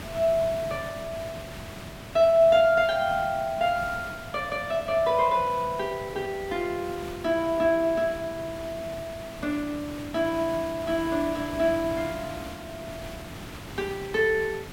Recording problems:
background hiss; slope -4 dB per octave, SNR 14 dB

